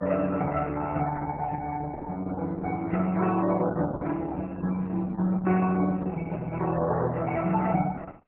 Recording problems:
codec artefacts; MP3, then Opus, log-spectral distance 3 dB

